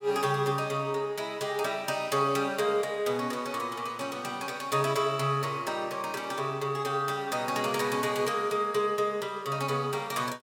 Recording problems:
none

